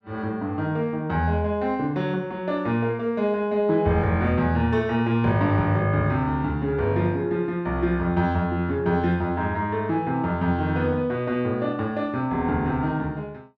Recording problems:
none

